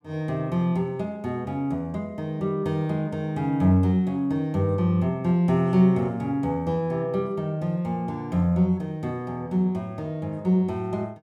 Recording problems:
none

